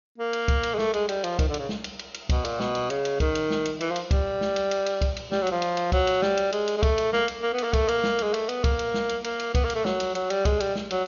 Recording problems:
low-pass filter; nothing above 6.8 kHz

